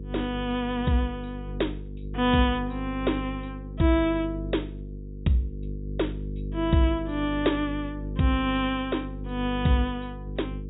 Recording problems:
treble cut off; nothing above 4 kHz
electrical hum; 50 Hz, harmonics up to 500 Hz, SNR 9 dB

